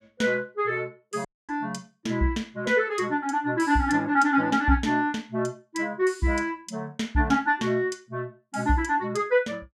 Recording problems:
dropout; at 1.5 s

